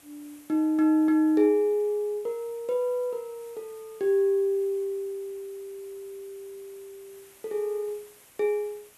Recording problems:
hiss; slope -2 dB per octave, SNR 27 dB

